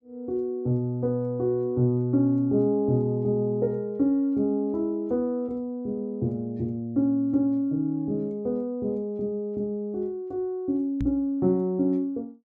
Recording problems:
microphone bump; at 11 s; peak -1 dB vs average level

